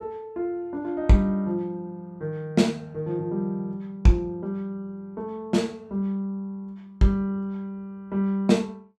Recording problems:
none

